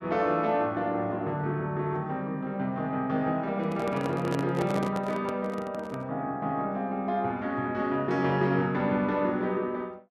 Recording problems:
handling noise; from 3.5 to 6 s; peak -1 dB vs average level

